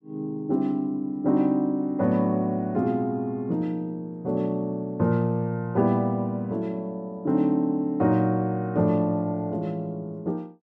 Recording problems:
none

